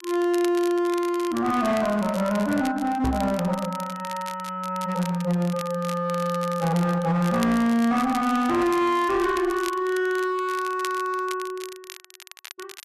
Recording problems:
distortion; hard clipping, uneven, signal-to-distortion ratio 10 dB
crackling; vinyl, SNR 17 dB
microphone bump; at 3 s; peak 0 dB vs average level

